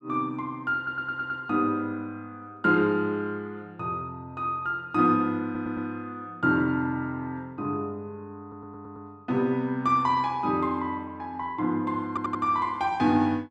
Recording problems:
stutter; 4 times, first at 1 s

